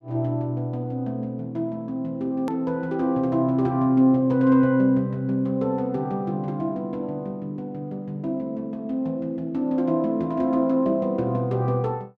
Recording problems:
click at an edit; at 2.5 s

